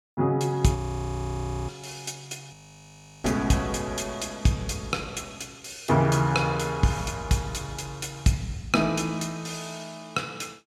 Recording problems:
audio freezing; at 1 s for 1 s and at 2.5 s for 0.5 s

